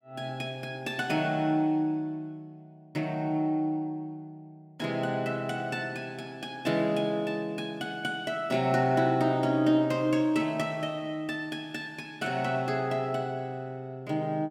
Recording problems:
none

